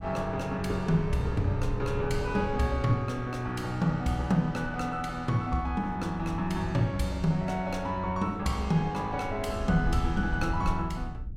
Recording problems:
low-frequency rumble; below 90 Hz, SNR 10 dB

